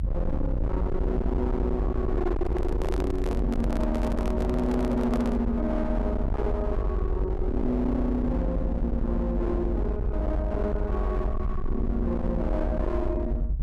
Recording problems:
distorted audio; hard clipping, signal-to-distortion ratio 7 dB
low-frequency rumble; below 86 Hz, SNR 1 dB
microphone handling noise; from 2.5 to 5.5 s; peak 0 dB vs average level

